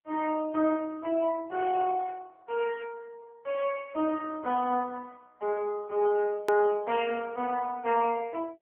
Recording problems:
phone line; 260 Hz to 2.9 kHz, AMR-NB
click at an edit; at 6.5 s

